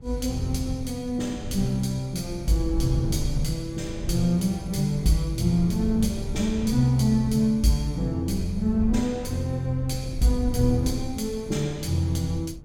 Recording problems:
wind noise; below 110 Hz, SNR 9 dB

